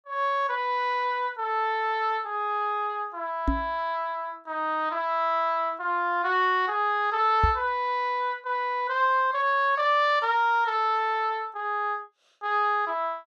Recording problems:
microphone bump; at 3.5 s and at 7.5 s; peak +4 dB vs average level

